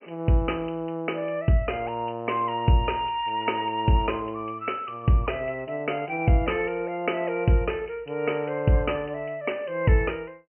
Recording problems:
treble cut off; nothing above 3 kHz

